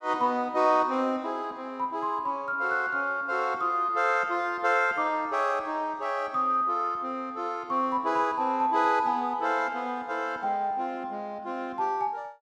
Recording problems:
none

